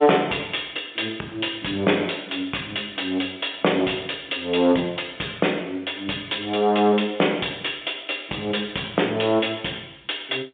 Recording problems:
telephone audio; 240 Hz to 3.6 kHz, G.711
distortion; soft clipping, signal-to-distortion ratio 14 dB

